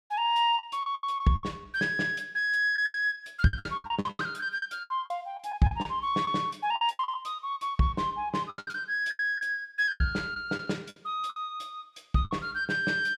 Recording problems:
packet loss; 14% of the sound replaced, filled with the last packet

